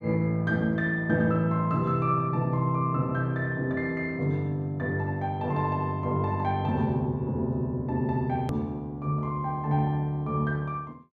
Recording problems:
click at an edit; at 8.5 s

